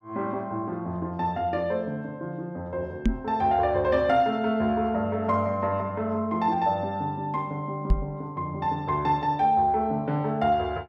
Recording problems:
microphone thump; at 3 s and at 8 s; peak +6 dB vs average level

